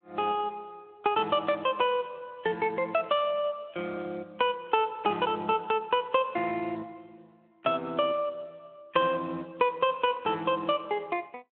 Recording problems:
telephone audio; 190 Hz to 3.5 kHz, Speex

